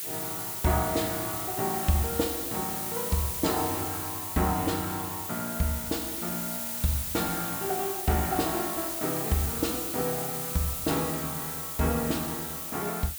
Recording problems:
background hiss; slope +2 dB per octave, SNR 1 dB

